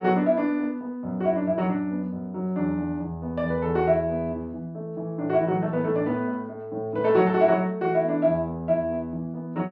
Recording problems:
none

